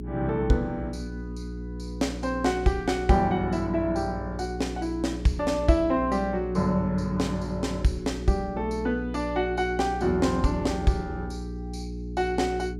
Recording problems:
hum; 60 Hz, harmonics up to 420 Hz, SNR 9 dB

